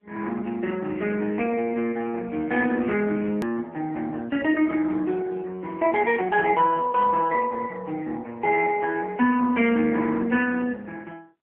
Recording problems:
telephone audio; 190 Hz to 3.5 kHz, AMR-NB
click at an edit; at 3.5 s

